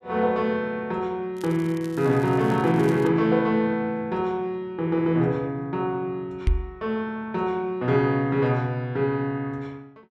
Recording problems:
crackle; from 1.5 to 3 s; loose cable, SNR 23 dB
knock on the microphone; at 6.5 s; peak +5 dB vs average level

